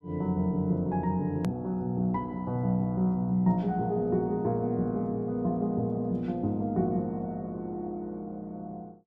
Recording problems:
edit click; at 1.5 s

